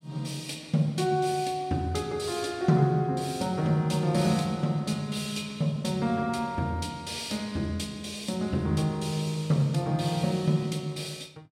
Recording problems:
none

